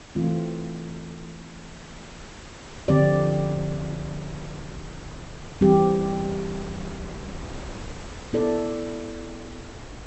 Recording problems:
low-pass filter; nothing above 8 kHz
background hiss; slope -2 dB per octave, SNR 19 dB
wind on the microphone; below 480 Hz, SNR 17 dB

